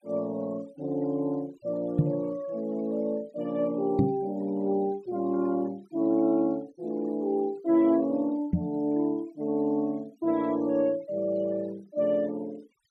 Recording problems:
denoising artefacts; signal-to-artefact ratio 27 dB
knock on the microphone; at 2 s, at 4 s and at 8.5 s; peak +9 dB vs average level

